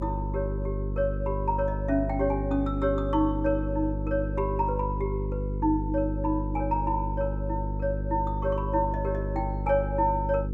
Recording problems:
hum; 50 Hz, harmonics up to 500 Hz, SNR 3 dB

